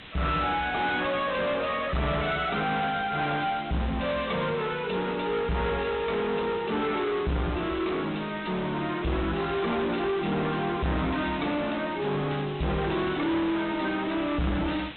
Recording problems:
treble missing; nothing above 3.9 kHz
codec artefacts; MP3, log-spectral distance 5 dB
distorted audio; soft clipping, signal-to-distortion ratio 7 dB
background hiss; SNR 15 dB

